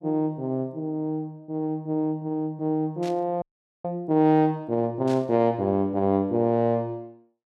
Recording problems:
burst of static; at 3 s and at 5 s; peak -12 dB vs average level
frozen audio; at 3.5 s

